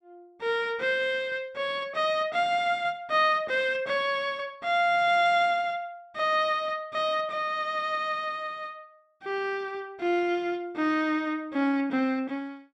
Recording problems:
none

